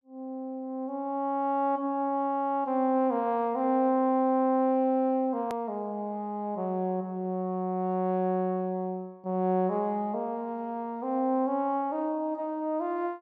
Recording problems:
edit click; at 5.5 s

